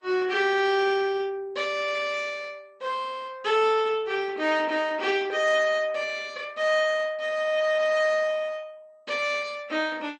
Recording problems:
lossy codec; Vorbis, then MP2, log-spectral distance 3 dB, nothing above 7.1 kHz

